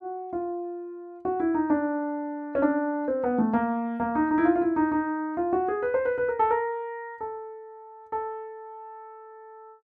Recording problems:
none

